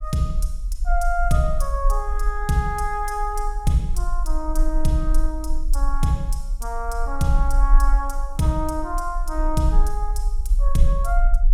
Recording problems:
rumble; below 40 Hz, strongest tone 22 Hz, SNR 0 dB

